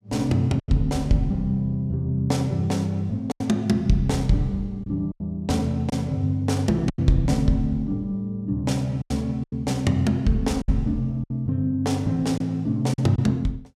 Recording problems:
packet loss; 5% of the sound replaced, filled with silence

